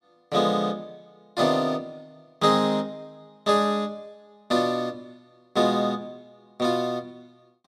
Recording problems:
none

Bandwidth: 13.5 kHz